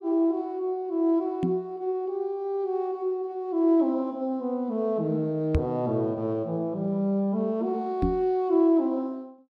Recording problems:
microphone bump; at 1.5 s, at 5.5 s and at 8 s; peak +5 dB vs average level

